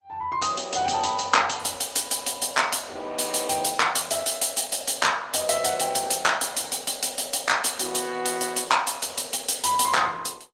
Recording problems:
codec artefacts; Opus, log-spectral distance 6 dB, nothing above 16 kHz

